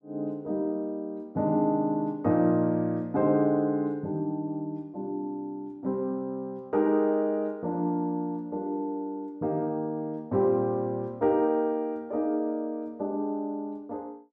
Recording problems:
none

